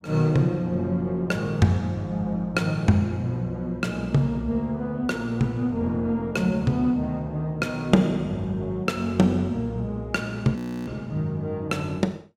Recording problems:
audio freezing; at 11 s

